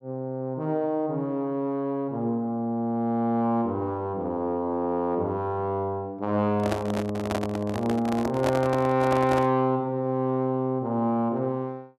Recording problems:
handling noise; from 6.5 to 9.5 s; peak +3 dB vs average level

